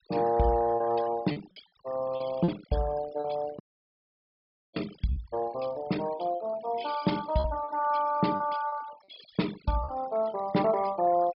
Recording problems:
low-pass filter; nothing above 5.3 kHz
noise reduction artefacts; signal-to-artefact ratio 17 dB
lost packets; 7% of the sound replaced, filled with repeated pitch periods
audio cutting out; at 3.5 s for 1 s

